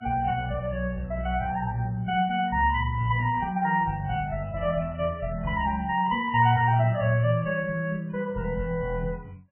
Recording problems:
lossy compression; MP3, then MP3, log-spectral distance 2 dB, nothing above 3 kHz

